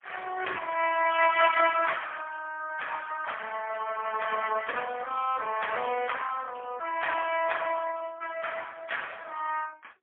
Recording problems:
telephone audio; 340 Hz to 3.3 kHz, AMR-NB, then MP3

